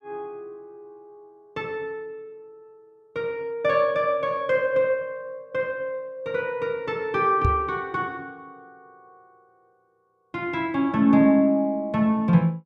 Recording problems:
microphone bump; at 7.5 s; peak +4 dB vs average level

